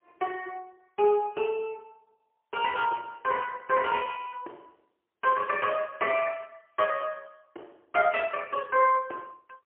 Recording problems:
phone line; 300 Hz to 3.3 kHz, AMR-NB, then MP3

